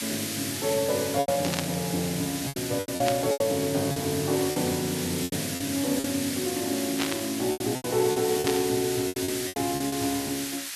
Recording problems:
hiss; SNR 4 dB
lost packets; 10% of the sound replaced, filled with repeated pitch periods
burst of static; 4 times, first at 1.5 s; peak +3 dB vs average level

